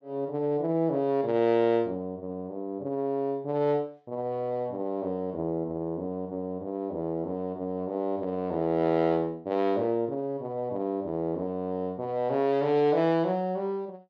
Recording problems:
none

